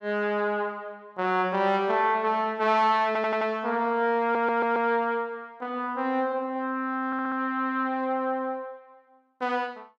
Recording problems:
audio stuttering; at 3 s, at 4 s and at 7 s

